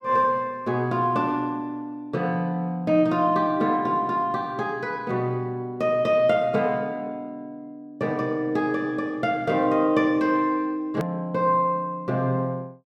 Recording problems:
hard cut with a click; at 11 s

